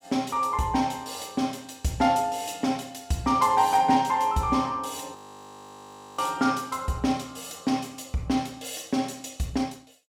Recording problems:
audio freezing; at 5 s for 1 s

